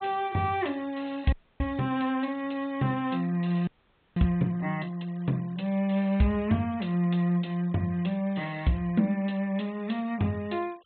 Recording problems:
low-pass filter; nothing above 4 kHz
noise reduction artefacts; signal-to-artefact ratio 27 dB
frozen audio; at 1.5 s and at 3.5 s

